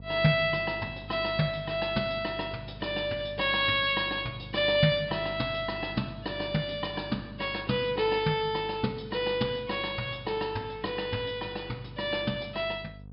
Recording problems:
low-pass filter; nothing above 5.5 kHz
hum; 50 Hz, harmonics up to 700 Hz, SNR 17 dB

